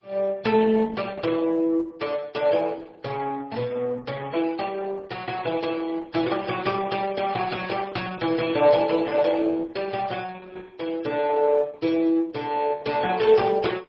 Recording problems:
codec artefacts; MP3, then Opus, log-spectral distance 4 dB

